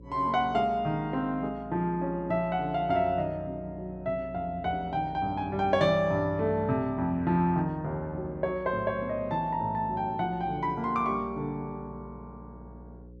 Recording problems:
hum; 60 Hz, harmonics up to 540 Hz, SNR 20 dB

